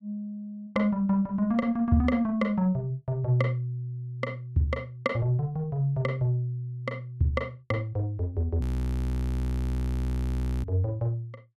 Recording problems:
audio freezing; at 8.5 s for 2 s

